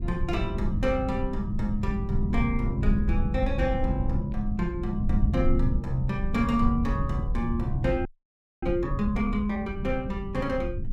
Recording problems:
low-frequency rumble; below 110 Hz, SNR 1 dB
audio freezing; at 8 s for 0.5 s

